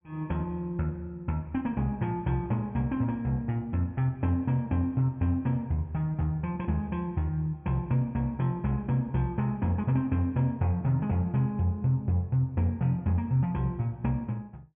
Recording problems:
treble cut off; nothing above 3.4 kHz

